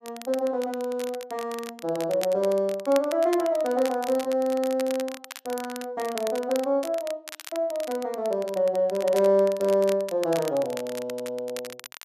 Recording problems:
crackling; vinyl, SNR 15 dB

